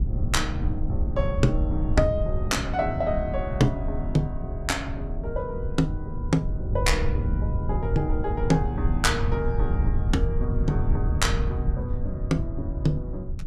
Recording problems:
rumble; below 100 Hz, SNR 1 dB

